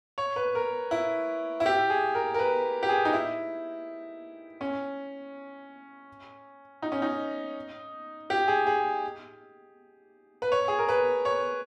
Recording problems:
none

